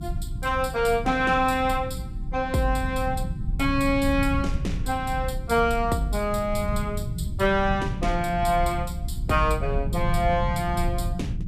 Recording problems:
mains hum; 60 Hz, harmonics up to 360 Hz, SNR 18 dB
low-frequency rumble; below 120 Hz, SNR 6 dB

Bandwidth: 14.5 kHz